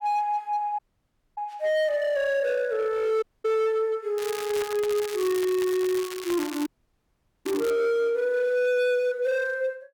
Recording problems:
distorted audio; hard clipping, signal-to-distortion ratio 10 dB
dropout; at 1 s for 0.5 s, at 3 s and at 6.5 s for 1 s
crackle; from 4 to 7.5 s; loose cable, SNR 12 dB

